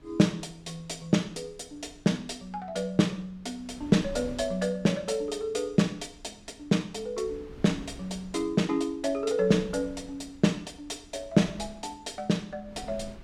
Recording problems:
wind on the microphone; below 280 Hz, SNR 21 dB

